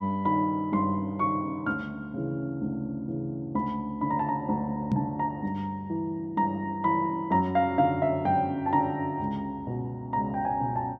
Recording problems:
microphone bump; at 5 s; peak +5 dB vs average level

